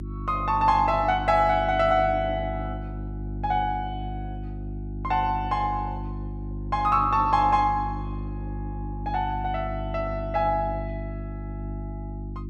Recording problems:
mains hum; 50 Hz, harmonics up to 350 Hz, SNR 9 dB

